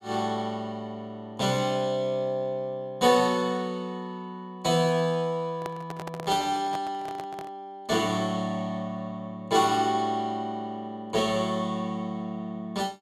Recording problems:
microphone handling noise; from 5.5 to 7.5 s; peak -4 dB vs average level

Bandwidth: 15.5 kHz